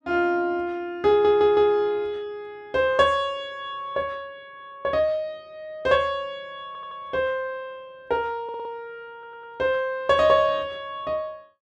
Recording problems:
audio stuttering; 4 times, first at 1 s

